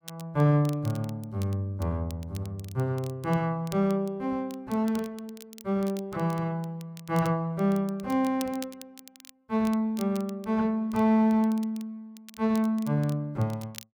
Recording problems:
crackling; vinyl, SNR 21 dB

